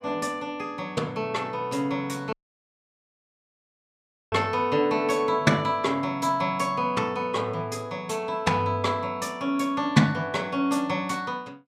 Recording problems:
dropout; at 2.5 s for 2 s

